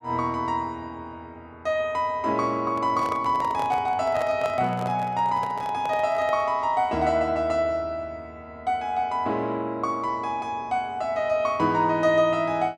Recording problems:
handling noise; from 2.5 to 6.5 s; peak -6 dB vs average level

